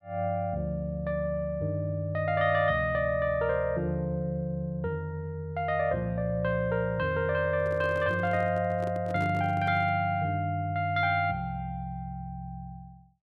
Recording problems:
handling noise; from 7.5 to 10 s; peak -8 dB vs average level

